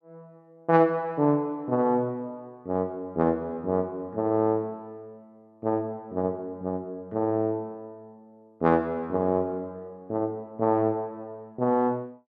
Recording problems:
none

